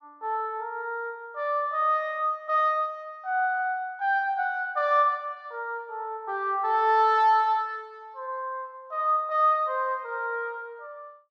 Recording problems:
none

